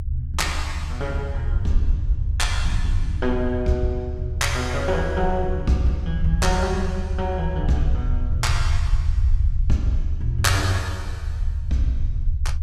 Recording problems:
low-frequency rumble; below 76 Hz, SNR 1 dB

